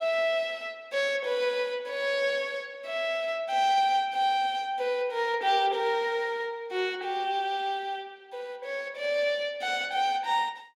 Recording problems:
none

